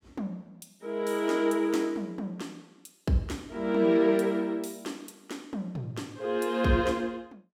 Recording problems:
none

